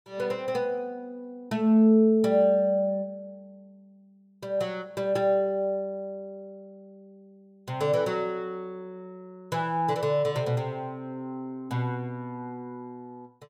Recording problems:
none

